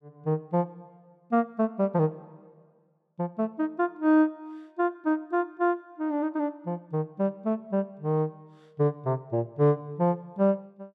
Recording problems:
none

